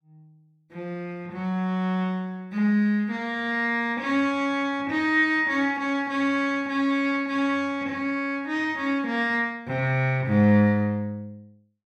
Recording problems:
none

